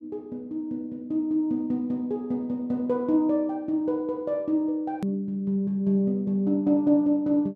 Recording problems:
click at an edit; at 5 s

